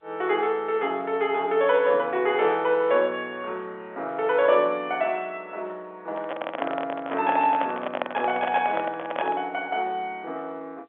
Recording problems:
phone line; 320 Hz to 3.5 kHz, G.711
microphone handling noise; from 6 to 9.5 s; peak +2 dB vs average level

